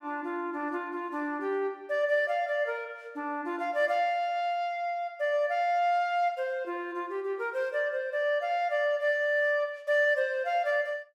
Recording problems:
none

